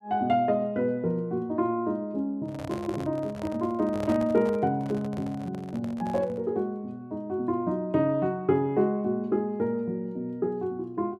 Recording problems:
microphone handling noise; from 2.5 to 6.5 s; peak -4 dB vs average level

